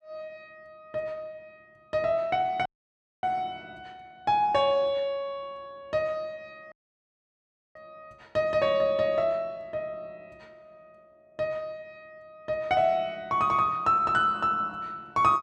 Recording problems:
audio cutting out; at 2.5 s for 0.5 s and at 6.5 s for 1 s

